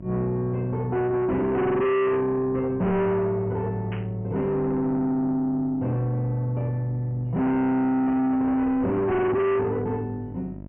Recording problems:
treble missing; nothing above 3.1 kHz
distortion; soft clipping, signal-to-distortion ratio 6 dB
hum; 50 Hz, harmonics up to 950 Hz, SNR 18 dB
static burst; at 4 s; peak -11 dB vs average level

